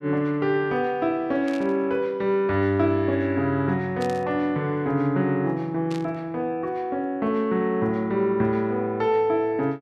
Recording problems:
static burst; at 1.5 s, at 4 s and at 6 s; peak -11 dB vs average level

